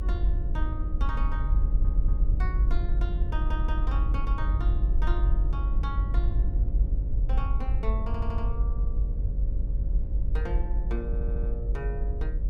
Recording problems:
electrical hum; 60 Hz, harmonics up to 600 Hz, SNR 8 dB
rumble; below 52 Hz, SNR -11 dB
audio stuttering; 4 times, first at 1.5 s

